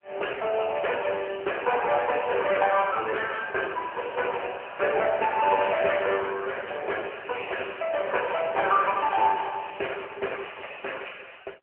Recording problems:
phone line; 340 Hz to 3.1 kHz, AMR-NB

